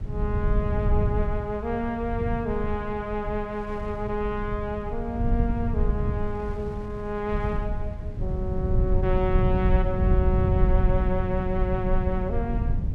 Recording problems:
rumble; below 100 Hz, SNR -1 dB
wind on the microphone; below 1.1 kHz, SNR 23 dB

